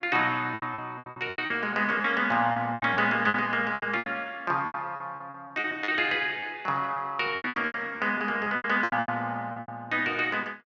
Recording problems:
lost packets; 17% of the sound replaced, filled with repeated pitch periods

